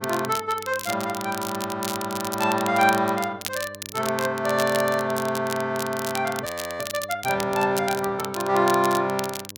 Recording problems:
hum; 50 Hz, harmonics up to 1.1 kHz, SNR 22 dB
crackling; vinyl, SNR 10 dB
audio freezing; at 6.5 s

